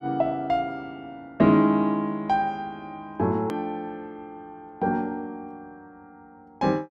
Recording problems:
edit click; at 3.5 s

